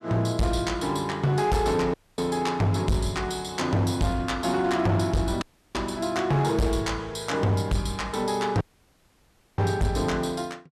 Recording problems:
distortion; hard clipping, signal-to-distortion ratio 8 dB
audio cutting out; at 2 s, at 5.5 s and at 8.5 s for 1 s

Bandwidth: 13.5 kHz